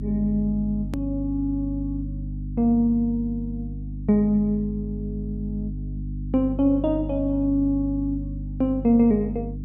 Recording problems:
hum; 50 Hz, harmonics up to 300 Hz, SNR 8 dB
hard cut with a click; at 1 s

